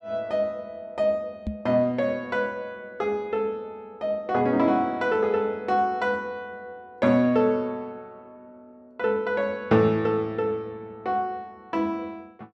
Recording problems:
knock on the microphone; at 1.5 s; peak -1 dB vs average level

